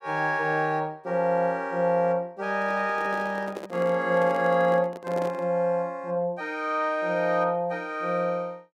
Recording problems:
handling noise; from 2.5 to 5.5 s; peak -6 dB vs average level

